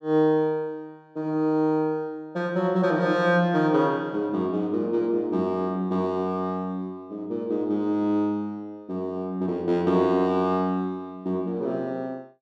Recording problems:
none

